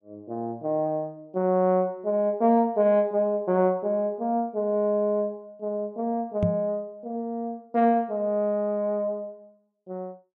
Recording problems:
microphone thump; at 6.5 s; peak +4 dB vs average level

